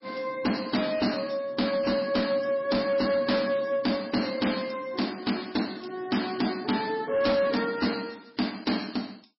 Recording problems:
lossy codec; MP3, log-spectral distance 6 dB, nothing above 5.5 kHz
distortion; hard clipping, signal-to-distortion ratio 11 dB

